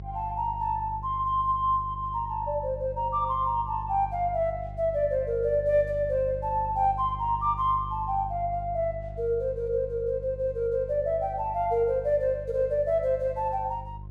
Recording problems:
hum; 50 Hz, harmonics up to 400 Hz, SNR 13 dB

